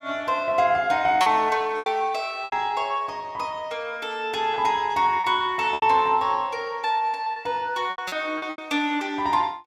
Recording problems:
packet loss; 7% of the sound replaced, filled with repeated pitch periods

